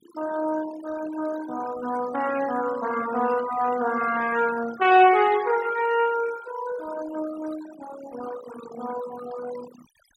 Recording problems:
denoising artefacts; signal-to-artefact ratio 15 dB

